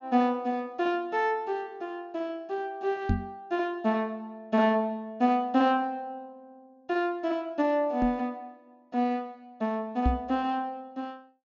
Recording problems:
treble cut off; nothing above 7 kHz
knock on the microphone; at 3 s, at 8 s and at 10 s; peak +6 dB vs average level

